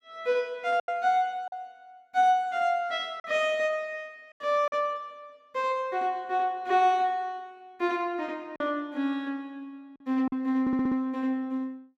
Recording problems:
packet loss; 3% of the sound replaced, filled with silence
audio stuttering; at 11 s

